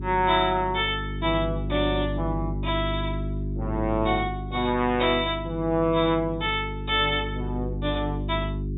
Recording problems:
treble cut off; nothing above 4 kHz
hum; 50 Hz, harmonics up to 400 Hz, SNR 6 dB

